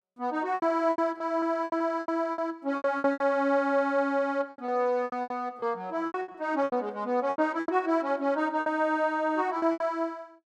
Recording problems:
lost packets; 15% of the sound replaced, filled with repeated pitch periods

